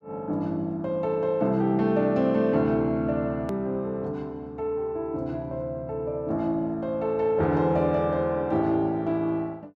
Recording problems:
hard cut with a click; at 3.5 s

